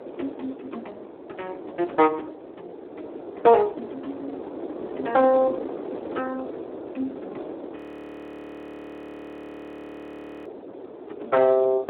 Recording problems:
phone line; 280 Hz to 3.2 kHz, Speex
wind noise; below 560 Hz, SNR 13 dB
frozen audio; at 8 s for 2.5 s

